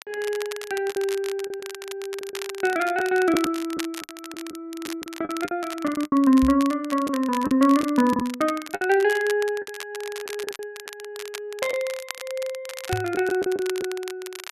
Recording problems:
crackling; vinyl, SNR 13 dB
packet loss; 8% of the sound replaced, filled with the last packet
microphone thump; at 6.5 s and at 13 s; peak -1 dB vs average level

